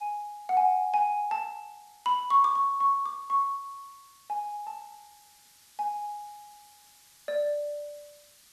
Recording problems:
background hiss; slope +3 dB per octave, SNR 28 dB

